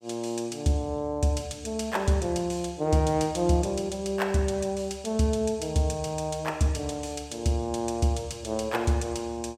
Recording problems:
none

